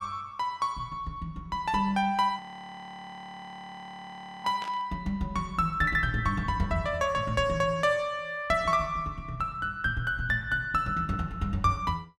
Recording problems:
audio freezing; at 2.5 s for 2 s
burst of static; at 4.5 s; peak -9 dB vs average level

